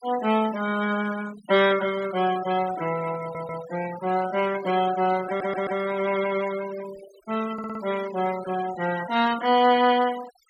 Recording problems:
noise reduction artefacts; signal-to-artefact ratio 16 dB
stutter; at 3 s, at 5.5 s and at 7.5 s

